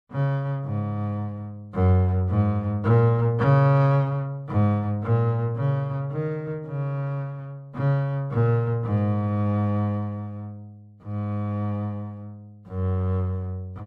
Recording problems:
none

